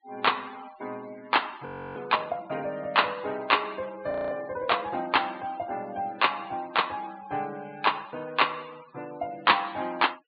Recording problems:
treble missing; nothing above 4.5 kHz
noise reduction artefacts; signal-to-artefact ratio 22 dB
audio freezing; at 1.5 s and at 4 s

